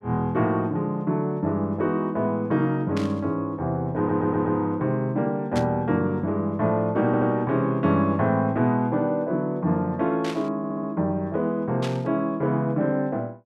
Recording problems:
static burst; 4 times, first at 3 s; peak -6 dB vs average level
stutter; at 4 s, at 7 s and at 11 s

